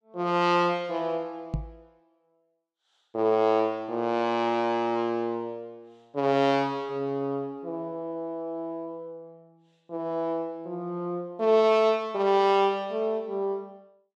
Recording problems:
microphone thump; at 1.5 s; peak +1 dB vs average level

